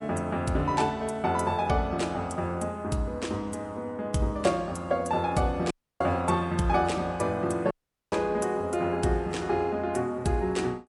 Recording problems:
lossy codec; MP3, log-spectral distance 2 dB, nothing above 11 kHz
dropout; at 5.5 s and at 7.5 s

